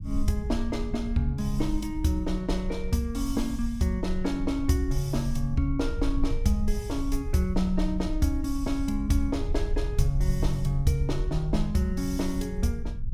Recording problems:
low-frequency rumble; below 60 Hz, SNR 5 dB

